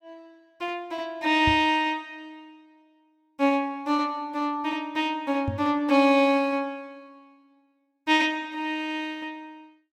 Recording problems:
microphone bump; at 1.5 s and at 5.5 s; peak -1 dB vs average level

